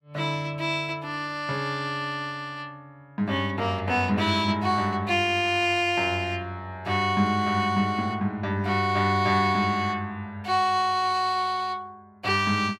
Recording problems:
none

